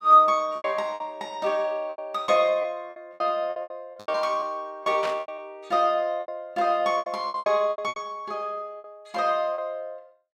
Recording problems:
lost packets; 14% of the sound replaced, filled with repeated pitch periods
burst of static; at 5 s; peak -4 dB vs average level

